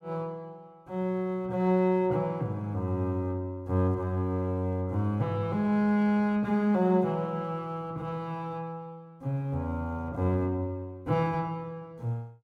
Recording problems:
none

